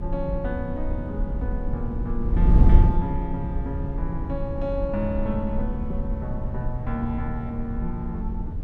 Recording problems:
wind noise; below 80 Hz, SNR -3 dB

